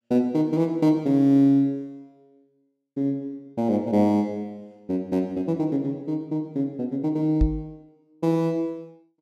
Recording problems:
microphone thump; at 7.5 s; peak +4 dB vs average level

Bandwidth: 13.5 kHz